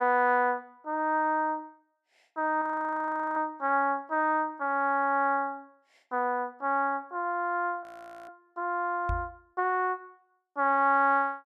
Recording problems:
frozen audio; at 2.5 s for 0.5 s and at 8 s
microphone bump; at 9 s; peak -2 dB vs average level

